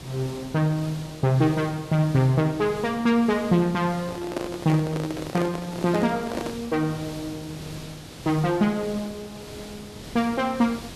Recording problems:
background hiss; slope -3 dB per octave, SNR 15 dB
microphone handling noise; from 4 to 6.5 s; peak -1 dB vs average level

